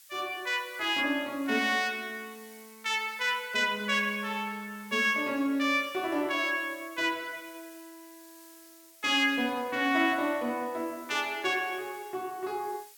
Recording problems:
background hiss; slope +5 dB per octave, SNR 22 dB

